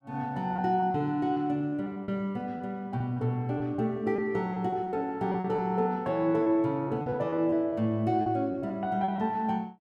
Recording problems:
packet loss; 9% of the sound replaced, filled with repeated pitch periods

